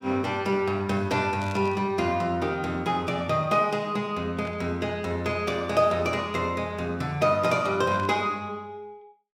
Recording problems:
static burst; at 1.5 s, at 4.5 s and at 8 s; peak -13 dB vs average level

